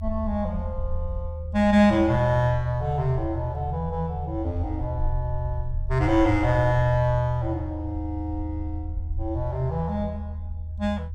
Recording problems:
rumble; below 80 Hz, strongest tone 80 Hz, SNR 7 dB

